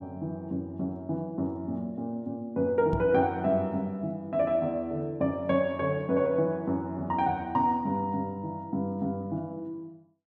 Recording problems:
microphone bump; at 3 s; peak +1 dB vs average level

